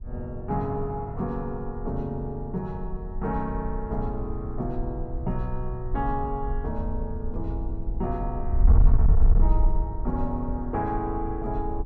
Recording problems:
distorted audio; soft clipping, signal-to-distortion ratio 11 dB
wind noise; below 60 Hz, SNR -2 dB

